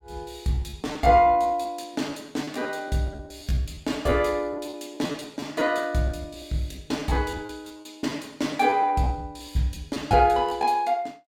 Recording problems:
packet loss; 13% of the sound replaced, filled with repeated pitch periods

